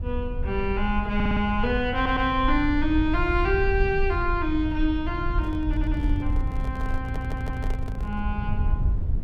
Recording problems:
low-frequency rumble; below 78 Hz, SNR 3 dB
audio stuttering; 4 times, first at 1 s
handling noise; from 5.5 to 8 s; peak -8 dB vs average level

